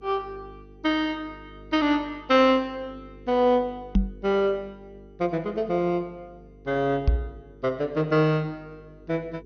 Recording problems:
lossy codec; MP2, log-spectral distance 2 dB, nothing above 6 kHz
electrical hum; 50 Hz, harmonics up to 450 Hz, SNR 23 dB
microphone bump; at 4 s and at 7 s; peak +7 dB vs average level

